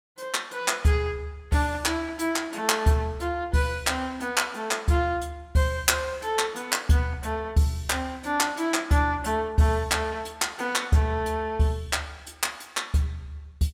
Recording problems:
none

